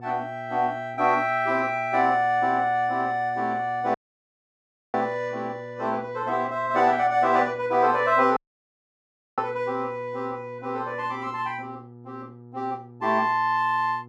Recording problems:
hum; 60 Hz, harmonics up to 960 Hz, SNR 20 dB
audio cutting out; at 4 s for 1 s and at 8.5 s for 1 s

